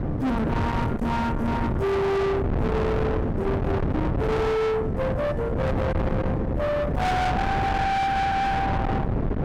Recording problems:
distortion; soft clipping, signal-to-distortion ratio 6 dB
wind noise; below 740 Hz, SNR 1 dB

